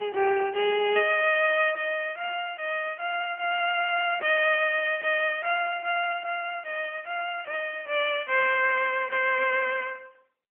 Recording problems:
phone line; 320 Hz to 3.3 kHz, AMR-NB

